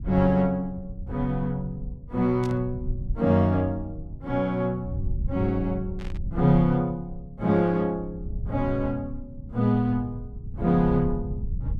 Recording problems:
low-frequency rumble; below 100 Hz, SNR 11 dB
static burst; at 2.5 s and at 6 s; peak -14 dB vs average level

